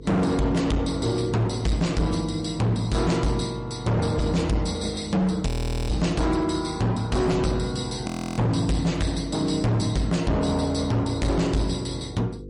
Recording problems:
lossy compression; MP3, log-spectral distance 2 dB, nothing above 17.7 kHz
distortion; hard clipping, signal-to-distortion ratio 7 dB
electrical hum; 50 Hz, harmonics up to 500 Hz, SNR 16 dB
audio freezing; at 5.5 s and at 8 s

